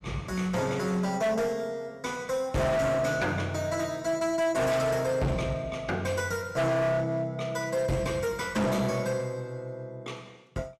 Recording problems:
distorted audio; hard clipping, uneven, signal-to-distortion ratio 8 dB

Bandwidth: 14 kHz